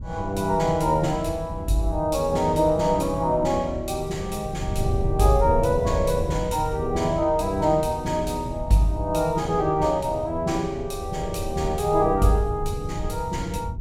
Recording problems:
wind noise; below 110 Hz, SNR 9 dB

